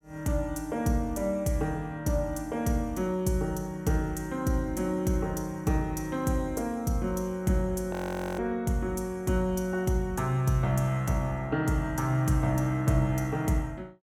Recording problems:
audio freezing; at 8 s

